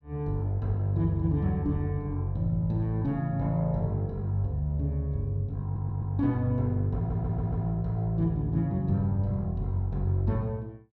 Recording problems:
audio stuttering; at 5.5 s and at 7 s

